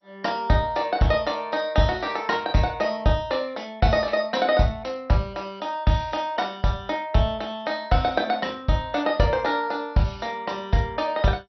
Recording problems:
lossy compression; MP2, log-spectral distance 3 dB, nothing above 5.7 kHz

